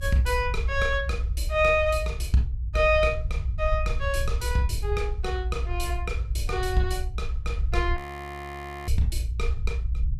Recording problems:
rumble; below 68 Hz, SNR 2 dB
frozen audio; at 8 s for 1 s

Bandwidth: 14.5 kHz